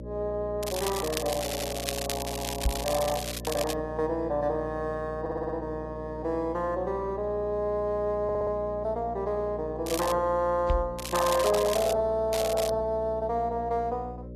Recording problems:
lossy codec; AAC, log-spectral distance 3 dB, nothing above 13.7 kHz
electrical hum; 60 Hz, harmonics up to 600 Hz, SNR 11 dB
crackle; 4 times, first at 0.5 s; loose cable, SNR 7 dB
stutter; at 1.5 s, at 5 s and at 8 s
knock on the microphone; at 2.5 s and at 11 s; peak +4 dB vs average level

